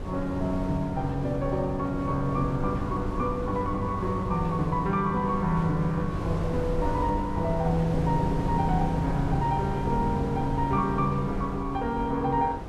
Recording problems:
wind noise; below 340 Hz, SNR 6 dB

